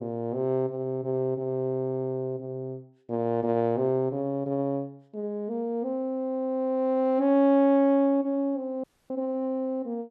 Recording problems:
audio cutting out; at 9 s

